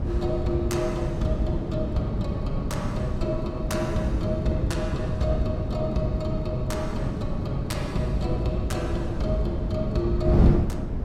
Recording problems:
wind noise; below 220 Hz, SNR 0 dB

